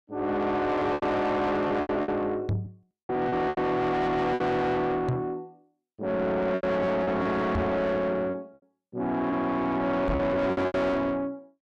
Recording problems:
distorted audio; soft clipping, signal-to-distortion ratio 8 dB
packet loss; 9% of the sound replaced, filled with repeated pitch periods
microphone thump; 4 times, first at 2.5 s; peak +4 dB vs average level

